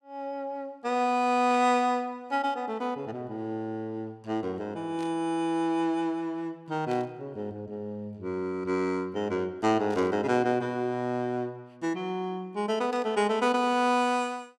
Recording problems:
burst of static; 5 times, first at 1.5 s; peak -13 dB vs average level

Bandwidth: 15 kHz